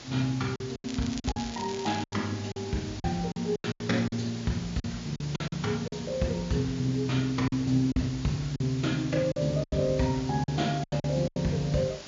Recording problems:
treble missing; nothing above 7.2 kHz
electrical hum; 50 Hz, harmonics up to 1.1 kHz, SNR 27 dB
background hiss; slope -1 dB per octave, SNR 14 dB
lost packets; 11% of the sound replaced, filled with silence
crackling; from 1 to 2 s; loose cable, SNR 13 dB

